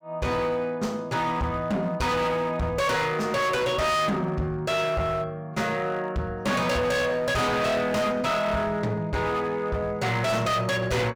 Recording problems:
distortion; hard clipping, signal-to-distortion ratio 6 dB

